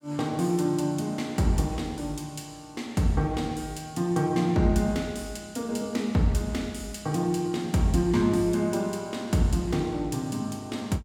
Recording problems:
none

